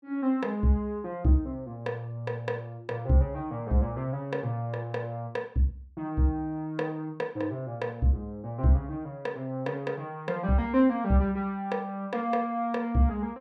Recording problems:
none

